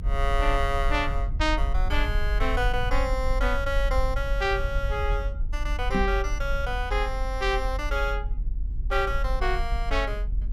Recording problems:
low-frequency rumble; below 48 Hz, SNR 2 dB
microphone thump; at 6 s; peak +5 dB vs average level

